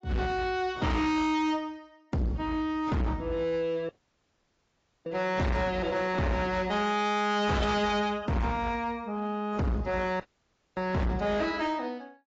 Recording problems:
lossy compression; AAC, log-spectral distance 2 dB, nothing above 7.6 kHz
distortion; hard clipping, uneven, signal-to-distortion ratio 6 dB
audio cutting out; at 4 s for 1 s and at 10 s for 0.5 s

